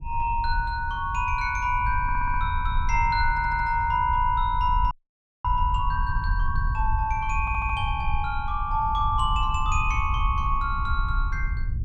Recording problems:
low-frequency rumble; below 72 Hz, SNR 4 dB
stutter; at 2 s, at 3.5 s and at 7.5 s
audio freezing; at 5 s for 0.5 s

